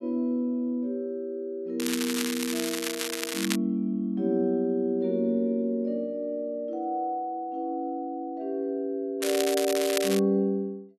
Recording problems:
crackling; from 2 to 3.5 s and at 9 s; loose cable, SNR 3 dB

